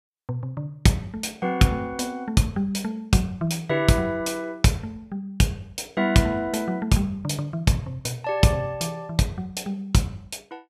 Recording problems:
none

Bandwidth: 14.5 kHz